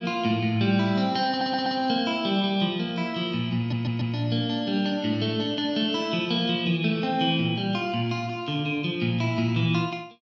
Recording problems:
audio stuttering; at 1.5 s and at 3.5 s

